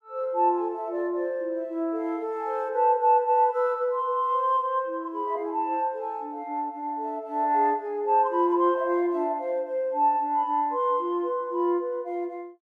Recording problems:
none

